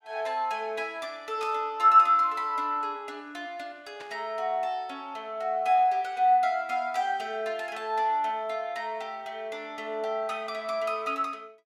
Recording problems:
burst of static; at 1.5 s and at 4 s; peak -12 dB vs average level

